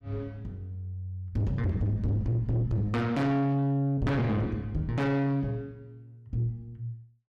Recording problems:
distorted audio; soft clipping, signal-to-distortion ratio 6 dB

